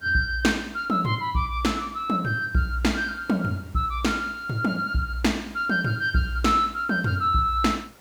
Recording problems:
background hiss; slope -4 dB per octave, SNR 27 dB

